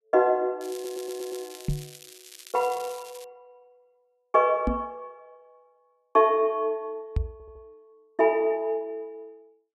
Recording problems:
crackle; from 0.5 to 3 s; loose cable, SNR 18 dB
stutter; at 0.5 s and at 7.5 s
knock on the microphone; at 1.5 s, at 4.5 s and at 7 s; peak +3 dB vs average level

